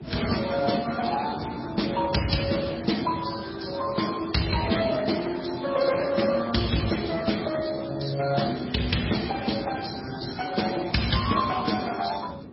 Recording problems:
lossy compression; Speex, then MP3, log-spectral distance 8 dB, nothing above 5.5 kHz
wind noise; below 350 Hz, SNR 14 dB

